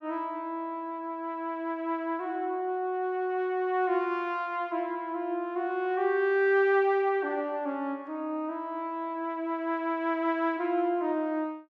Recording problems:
none

